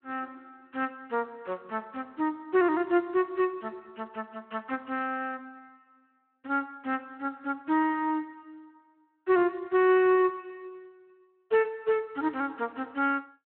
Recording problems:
telephone audio; 280 Hz to 3.1 kHz, Speex

